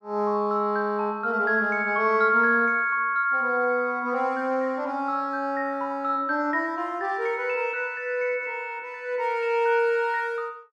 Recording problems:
none

